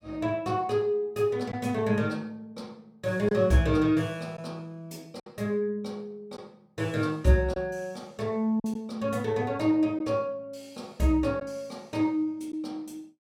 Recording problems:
lost packets; 1.7% of the sound replaced, filled with silence

